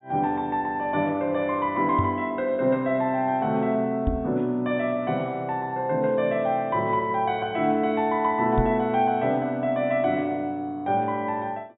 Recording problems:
low-pass filter; nothing above 4 kHz
microphone thump; at 2 s, at 4 s and at 8.5 s; peak +3 dB vs average level

